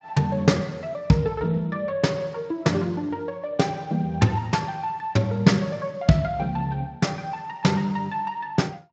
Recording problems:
codec artefacts; Speex, log-spectral distance 2 dB, nothing above 7.3 kHz

